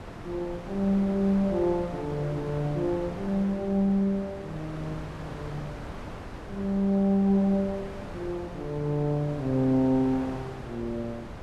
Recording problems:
wind noise; below 880 Hz, SNR 13 dB

